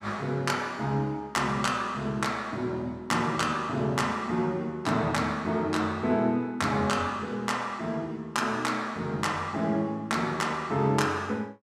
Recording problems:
none

